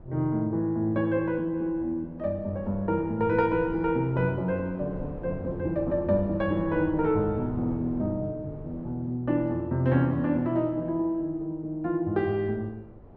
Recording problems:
wind noise; below 370 Hz, SNR 17 dB

